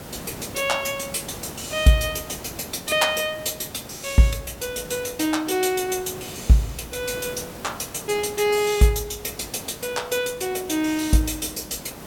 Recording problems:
background hiss; slope -5 dB per octave, SNR 15 dB

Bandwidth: 17 kHz